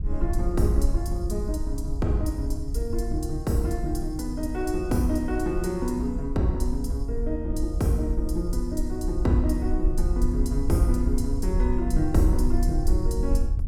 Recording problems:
wind on the microphone; below 62 Hz, SNR 1 dB

